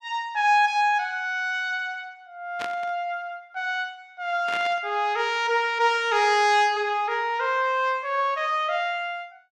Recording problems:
burst of static; at 2.5 s and at 4.5 s; peak -6 dB vs average level

